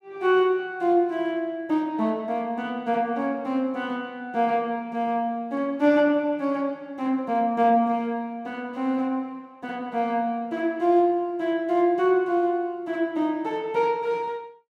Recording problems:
none

